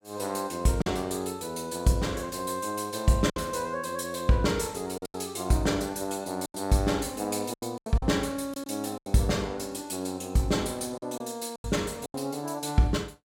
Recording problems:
packet loss; 6% of the sound replaced, filled with silence

